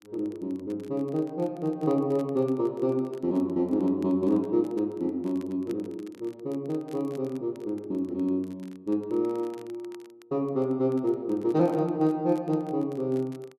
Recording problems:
crackling; vinyl, SNR 30 dB

